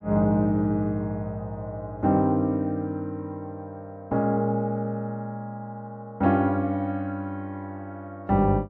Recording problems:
none

